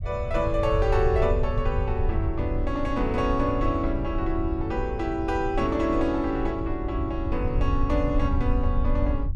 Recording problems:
rumble; below 86 Hz, SNR 3 dB

